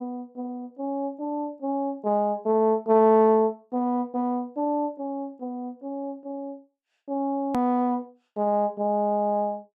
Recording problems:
hard cut with a click; at 7.5 s

